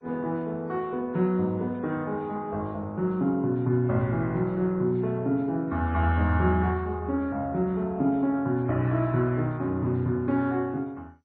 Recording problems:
codec artefacts; MP3, then MP2, log-spectral distance 2 dB

